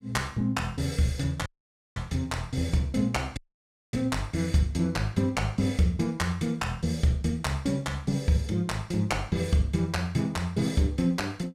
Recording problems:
dropout; at 1.5 s for 0.5 s and at 3.5 s for 0.5 s

